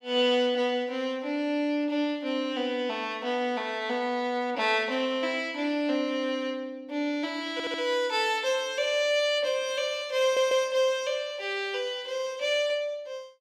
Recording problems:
audio stuttering; at 7.5 s and at 10 s

